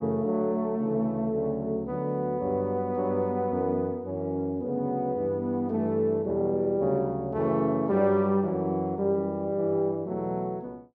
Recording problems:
none

